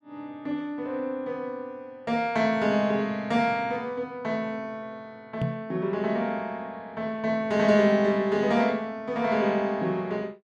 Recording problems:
microphone thump; at 5.5 s; peak +1 dB vs average level

